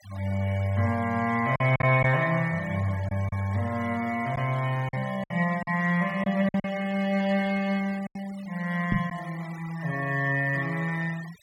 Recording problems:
denoising artefacts; signal-to-artefact ratio 20 dB
packet loss; 4% of the sound replaced, filled with silence
microphone thump; at 9 s; peak +4 dB vs average level

